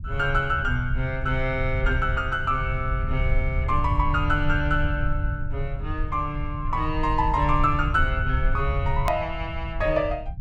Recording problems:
low-frequency rumble; below 80 Hz, SNR 4 dB
click at an edit; at 9 s

